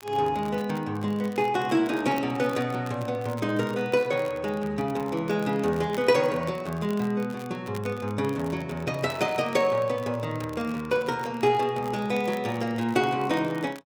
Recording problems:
crackle; vinyl, SNR 22 dB

